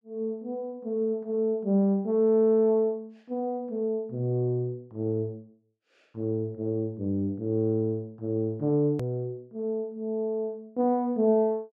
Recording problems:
edit click; at 9 s

